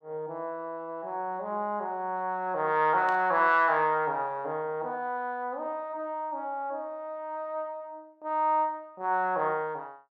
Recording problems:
static burst; at 3 s; peak -11 dB vs average level

